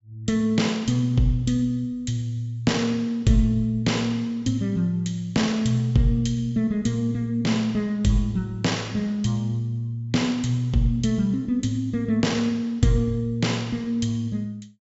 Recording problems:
low-pass filter; nothing above 8 kHz

